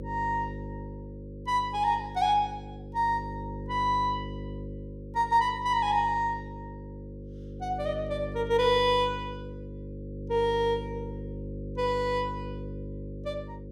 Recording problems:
hum; 50 Hz, harmonics up to 550 Hz, SNR 11 dB

